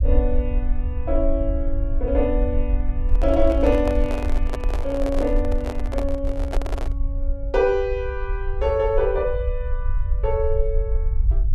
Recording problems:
rumble; below 56 Hz, SNR 2 dB
handling noise; from 3 to 7 s; peak -1 dB vs average level

